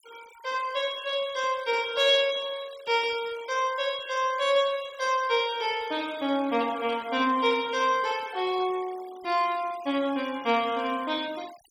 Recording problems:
denoising artefacts; signal-to-artefact ratio 21 dB

